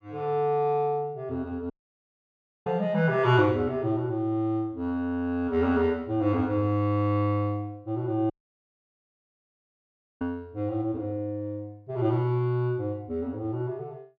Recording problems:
dropout; at 1.5 s for 1 s and at 8.5 s for 2 s

